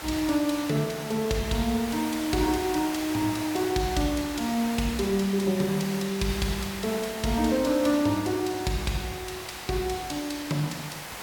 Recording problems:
background hiss; SNR 10 dB

